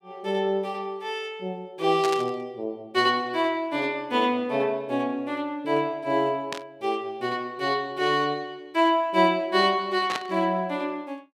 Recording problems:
burst of static; at 2 s, at 6.5 s and at 10 s; peak 0 dB vs average level

